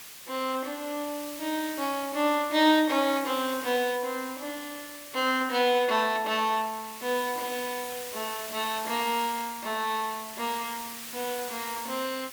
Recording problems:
background hiss; slope +1 dB per octave, SNR 10 dB

